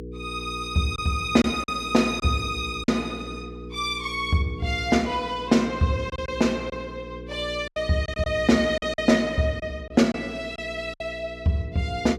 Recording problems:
hum; 60 Hz, harmonics up to 480 Hz, SNR 14 dB
packet loss; 5% of the sound replaced, filled with silence

